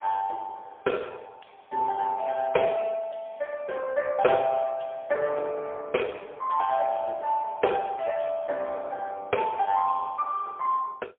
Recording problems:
telephone audio; 320 Hz to 2.5 kHz, AMR-NB, then MP3

